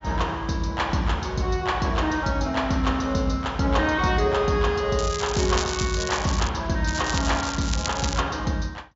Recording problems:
treble cut off; nothing above 7.5 kHz
crackling; from 5 to 6.5 s and from 7 to 8 s; loose cable, SNR 8 dB

